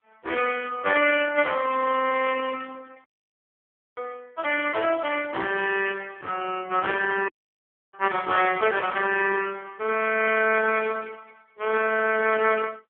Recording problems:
telephone audio; 240 Hz to 3.3 kHz, AMR-NB
audio cutting out; at 3 s for 1 s and at 7.5 s for 0.5 s

